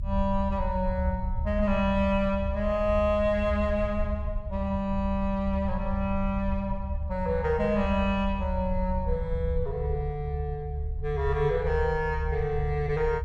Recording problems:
low-frequency rumble; below 74 Hz, SNR 5 dB

